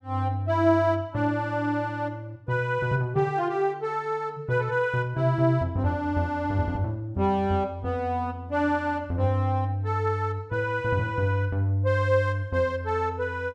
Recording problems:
none

